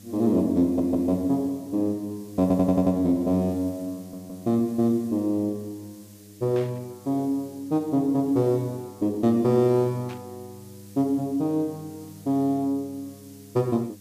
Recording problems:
hum; 50 Hz, harmonics up to 800 Hz, SNR 23 dB
hiss; slope +3 dB per octave, SNR 26 dB
audio stuttering; at 0.5 s, at 2.5 s and at 4 s
burst of static; at 6.5 s and at 10 s; peak -14 dB vs average level

